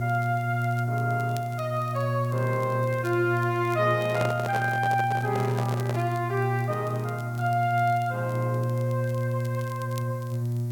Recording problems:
hum; 60 Hz, harmonics up to 600 Hz, SNR 2 dB
hiss; SNR 25 dB
crackling; vinyl, SNR 24 dB
handling noise; from 4 to 6 s; peak +2 dB vs average level

